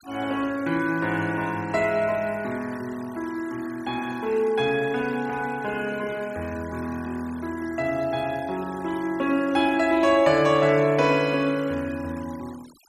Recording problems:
denoising artefacts; signal-to-artefact ratio 21 dB

